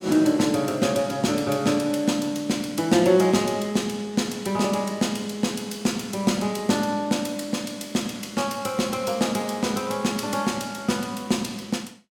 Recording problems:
none

